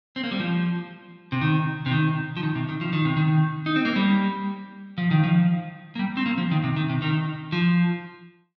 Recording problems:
none

